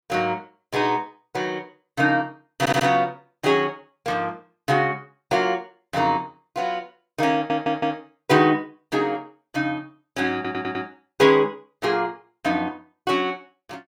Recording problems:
stutter; at 2.5 s, at 7.5 s and at 10 s

